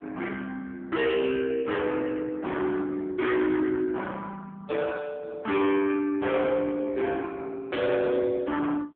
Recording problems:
phone line; 260 Hz to 2.8 kHz, AMR-NB
distortion; hard clipping, signal-to-distortion ratio 9 dB

